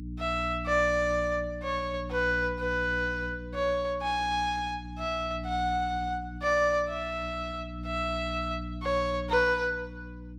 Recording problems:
electrical hum; 60 Hz, harmonics up to 300 Hz, SNR 10 dB

